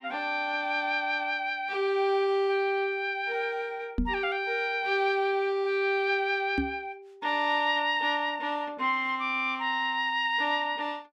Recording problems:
knock on the microphone; at 4 s and at 6.5 s; peak +2 dB vs average level

